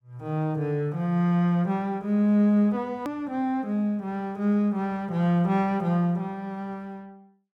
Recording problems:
hard cut with a click; at 3 s

